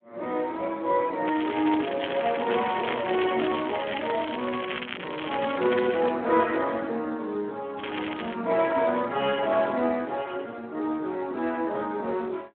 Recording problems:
telephone audio; 260 Hz to 3.6 kHz, Speex
crackle; from 1.5 to 6 s and at 8 s; loose cable, SNR 8 dB

